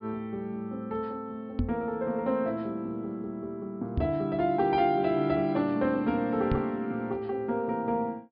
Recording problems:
treble cut off; nothing above 5.5 kHz
knock on the microphone; at 1.5 s, at 4 s and at 6.5 s; peak +4 dB vs average level

